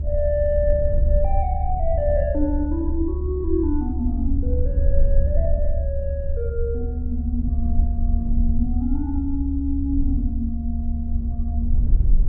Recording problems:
rumble; below 72 Hz, SNR -2 dB

